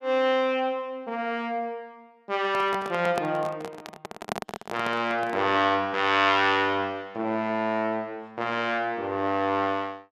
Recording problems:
microphone handling noise; from 2.5 to 5.5 s; peak 0 dB vs average level

